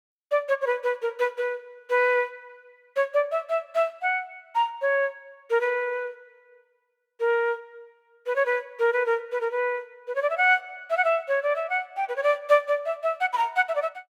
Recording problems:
none

